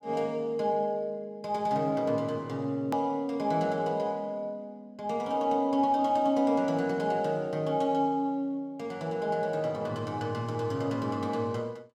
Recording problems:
edit click; at 3 s

